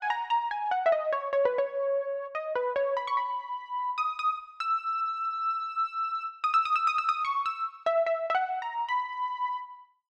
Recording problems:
none

